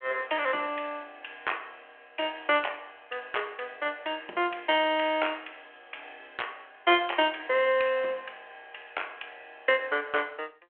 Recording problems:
phone line; 300 Hz to 3.3 kHz, G.726

